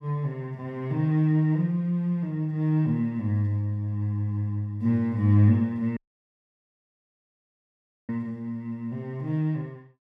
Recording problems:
dropout; at 6 s for 2 s

